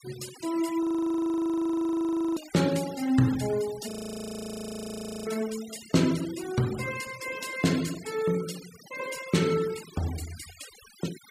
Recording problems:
denoising artefacts; signal-to-artefact ratio 14 dB
frozen audio; at 1 s for 1.5 s and at 4 s for 1.5 s

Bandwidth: 15.5 kHz